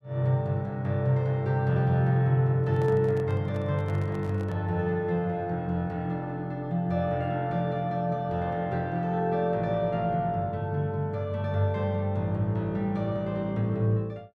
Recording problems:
handling noise; from 2.5 to 4.5 s; peak -12 dB vs average level

